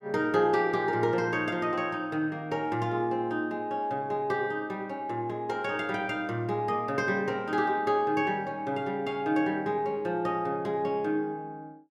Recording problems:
none

